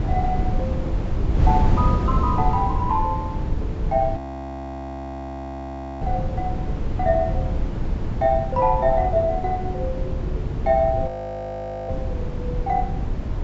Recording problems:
treble missing; nothing above 8 kHz
wind noise; below 150 Hz, SNR 2 dB
audio freezing; at 4 s for 2 s and at 11 s for 1 s

